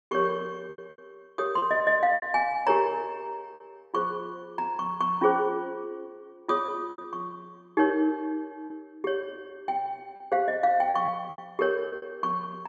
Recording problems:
packet loss; 7% of the sound replaced, filled with repeated pitch periods

